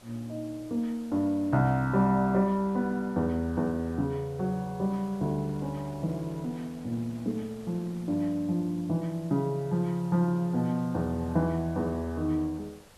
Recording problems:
hiss; slope 0 dB per octave, SNR 28 dB
wind on the microphone; below 1.6 kHz, SNR 27 dB

